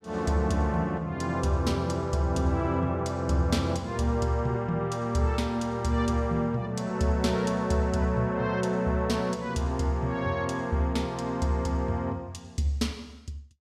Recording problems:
none

